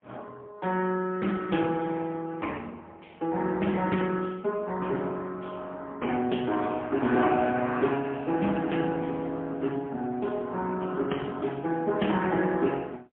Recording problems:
telephone audio; 150 Hz to 3.3 kHz, AMR-NB, then MP3

